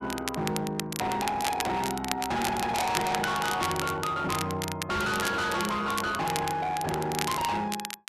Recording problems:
distorted audio; hard clipping, signal-to-distortion ratio 6 dB
crackling; vinyl, SNR 7 dB
knock on the microphone; at 5 s; peak -2 dB vs average level

